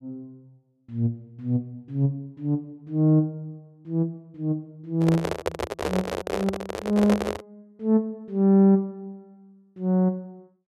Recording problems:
handling noise; from 5 to 7.5 s; peak +3 dB vs average level

